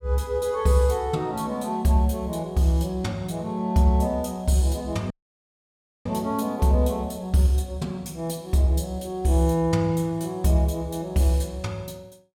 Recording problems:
dropout; at 5 s for 1 s

